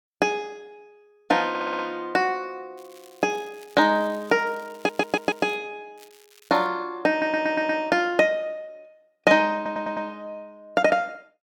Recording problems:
stutter; 4 times, first at 1.5 s
crackling; from 3 to 5.5 s and at 6 s; loose cable, SNR 28 dB

